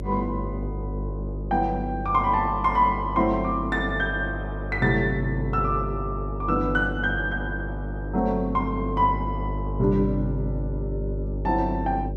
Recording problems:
hum; 50 Hz, harmonics up to 600 Hz, SNR 6 dB

